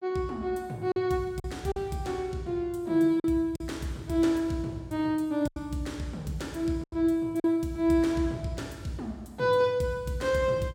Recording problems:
packet loss; 4% of the sound replaced, filled with silence

